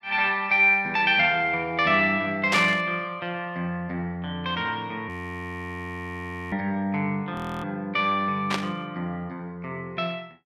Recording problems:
burst of static; at 2.5 s and at 8.5 s; peak +3 dB vs average level
audio freezing; at 5 s for 1.5 s and at 7.5 s

